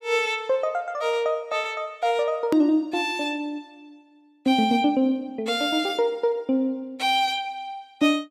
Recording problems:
hard cut with a click; at 2.5 s

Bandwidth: 15.5 kHz